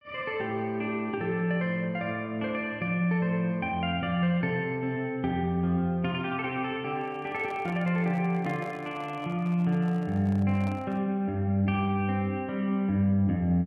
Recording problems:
microphone handling noise; from 7 to 11 s; peak -10 dB vs average level

